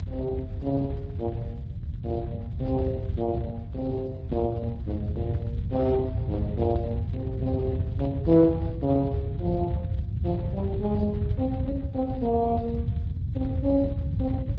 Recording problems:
lossy compression; Speex, log-spectral distance 2 dB
low-frequency rumble; below 130 Hz, SNR 3 dB

